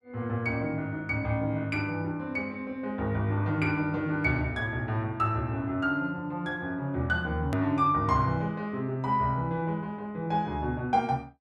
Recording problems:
hard cut with a click; at 7.5 s

